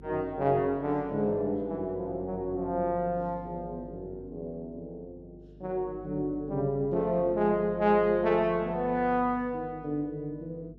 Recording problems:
electrical hum; 50 Hz, harmonics up to 500 Hz, SNR 19 dB

